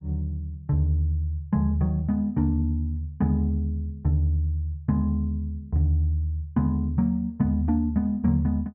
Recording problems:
none

